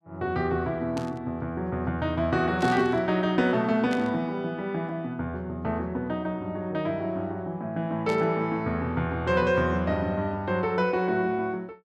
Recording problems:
static burst; 4 times, first at 1 s; peak -8 dB vs average level

